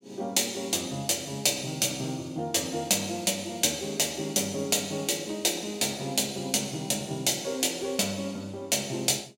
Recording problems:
none

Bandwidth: 16 kHz